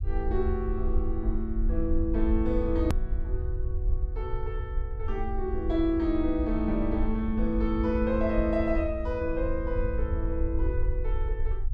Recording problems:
rumble; below 64 Hz, SNR 2 dB
hard cut with a click; at 3 s

